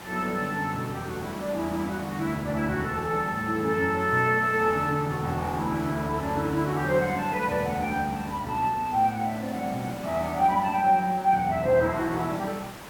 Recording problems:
background hiss; slope -4 dB per octave, SNR 16 dB

